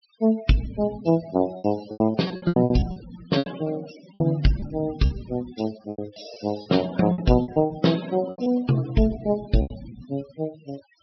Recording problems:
low-pass filter; nothing above 5.5 kHz
noise reduction artefacts; signal-to-artefact ratio 17 dB
lost packets; 12% of the sound replaced, filled with repeated pitch periods

